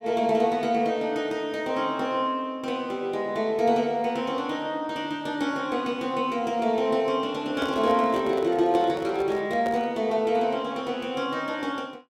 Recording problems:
microphone handling noise; from 7.5 to 10 s; peak -4 dB vs average level

